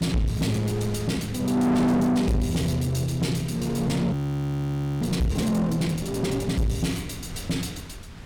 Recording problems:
distorted audio; soft clipping, signal-to-distortion ratio 5 dB
wind on the microphone; below 480 Hz, SNR 16 dB
frozen audio; at 4 s for 1 s

